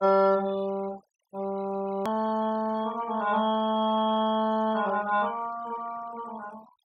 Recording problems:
noise reduction artefacts; signal-to-artefact ratio 20 dB
click at an edit; at 2 s

